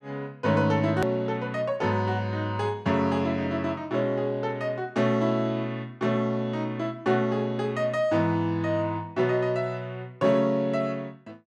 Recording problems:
click at an edit; at 1 s

